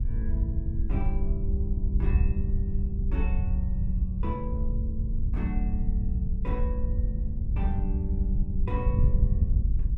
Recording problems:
wind noise; below 80 Hz, SNR -8 dB

